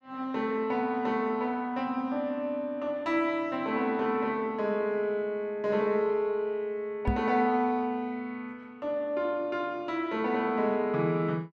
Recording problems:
microphone thump; at 7 s; peak +4 dB vs average level

